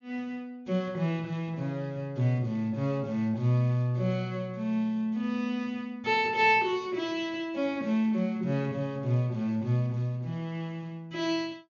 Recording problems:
treble missing; nothing above 7 kHz

